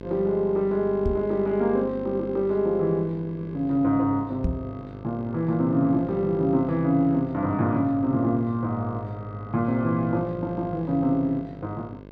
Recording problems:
hum; 50 Hz, harmonics up to 1.6 kHz, SNR 16 dB
microphone thump; at 1 s and at 4.5 s; peak +2 dB vs average level

